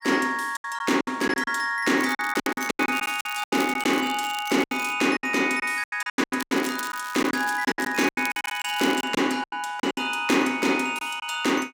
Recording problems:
lost packets; 14% of the sound replaced, filled with silence
crackle; from 2 to 5 s and from 6.5 to 9 s; loose cable, SNR 15 dB

